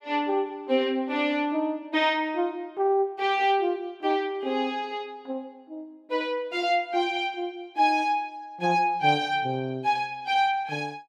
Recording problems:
none

